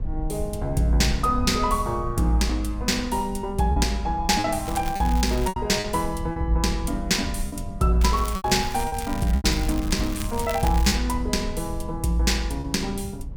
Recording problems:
rumble; below 86 Hz, SNR 11 dB
lost packets; 5% of the sound replaced, filled with repeated pitch periods
crackle; at 4.5 s and from 8 to 11 s; loose cable, SNR 15 dB

